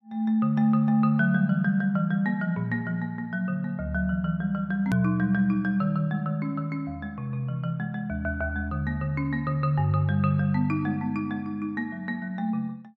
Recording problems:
edit click; at 5 s

